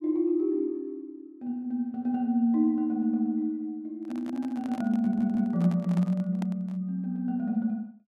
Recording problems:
microphone handling noise; from 4 to 7 s; peak -8 dB vs average level
stutter; at 5 s

